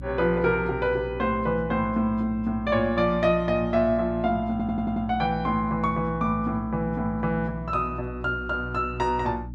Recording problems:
hum; 60 Hz, harmonics up to 300 Hz, SNR 12 dB
audio stuttering; at 4.5 s

